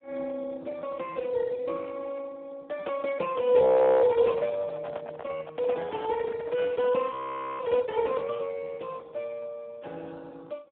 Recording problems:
telephone audio; 220 Hz to 2.6 kHz, Speex
frozen audio; at 3.5 s and at 7 s
microphone handling noise; from 4 to 8 s; peak -7 dB vs average level

